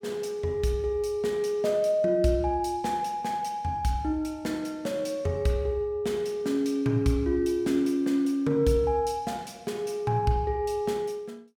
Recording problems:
none

